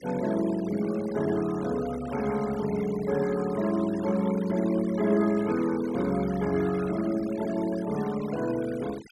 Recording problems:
noise reduction artefacts; signal-to-artefact ratio 16 dB

